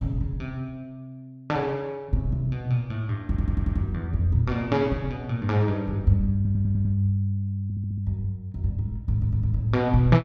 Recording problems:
audio stuttering; 4 times, first at 3.5 s

